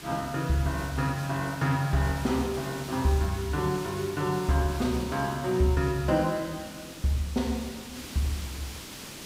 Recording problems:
hiss; SNR 13 dB

